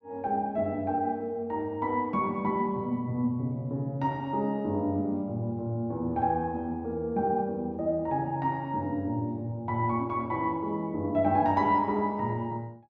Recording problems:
none

